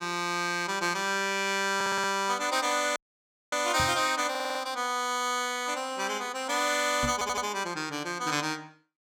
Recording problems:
stutter; at 2 s, at 4.5 s and at 7 s
dropout; at 3 s for 0.5 s
microphone bump; at 4 s and at 7 s; peak -2 dB vs average level

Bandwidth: 17 kHz